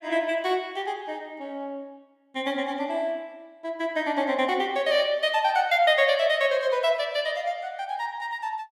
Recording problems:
none

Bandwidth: 15 kHz